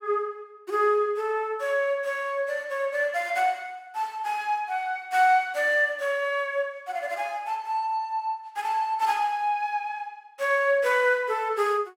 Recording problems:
none

